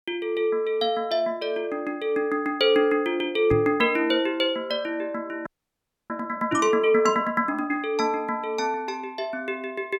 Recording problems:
knock on the microphone; at 3.5 s and at 6.5 s; peak -1 dB vs average level
frozen audio; at 5.5 s for 0.5 s

